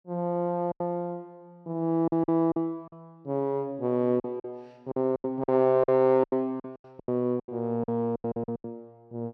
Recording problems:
packet loss; 14% of the sound replaced, filled with silence

